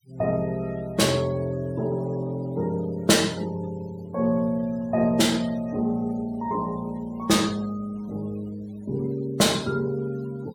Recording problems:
denoising artefacts; signal-to-artefact ratio 23 dB

